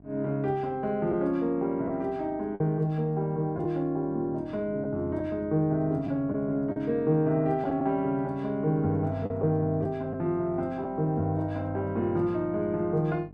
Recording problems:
electrical hum; 50 Hz, harmonics up to 1.1 kHz, SNR 23 dB
packet loss; 2% of the sound replaced, filled with the last packet

